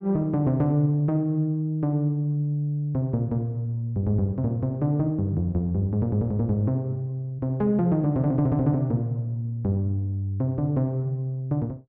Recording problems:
none

